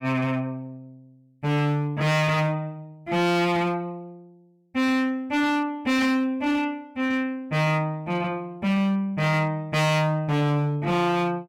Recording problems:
distortion; hard clipping, signal-to-distortion ratio 8 dB

